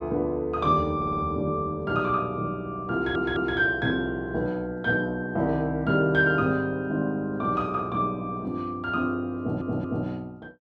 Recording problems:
stutter; at 1 s, at 3 s and at 9.5 s

